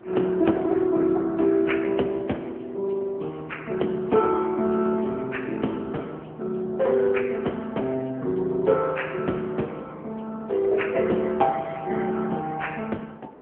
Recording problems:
phone line; 170 Hz to 3.3 kHz, AMR-NB
wind on the microphone; below 720 Hz, SNR 21 dB

